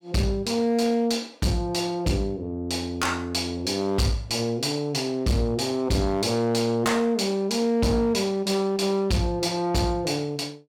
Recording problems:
distorted audio; hard clipping, uneven, signal-to-distortion ratio 11 dB

